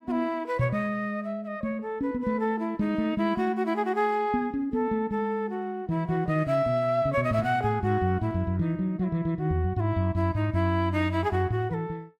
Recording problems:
none

